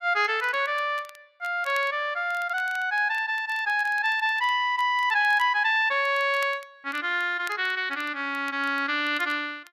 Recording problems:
crackle; vinyl, SNR 25 dB

